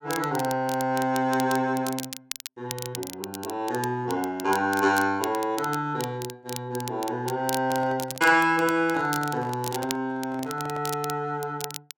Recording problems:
crackling; vinyl, SNR 12 dB
microphone handling noise; from 7.5 to 11 s; peak -10 dB vs average level

